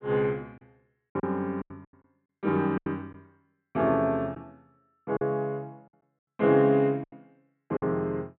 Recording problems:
treble missing; nothing above 4 kHz
lost packets; 9% of the sound replaced, filled with silence

